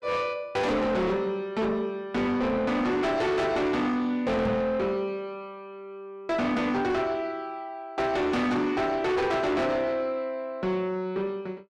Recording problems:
distorted audio; soft clipping, signal-to-distortion ratio 7 dB
microphone bump; at 4.5 s; peak +1 dB vs average level

